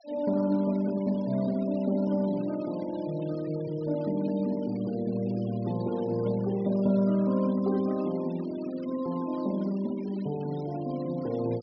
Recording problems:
treble missing; nothing above 5.5 kHz
noise reduction artefacts; signal-to-artefact ratio 22 dB

